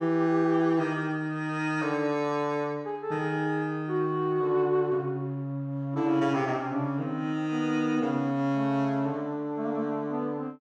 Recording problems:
none

